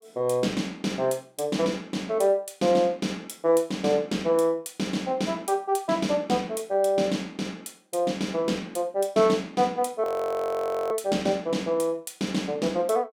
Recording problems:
audio freezing; at 10 s for 1 s

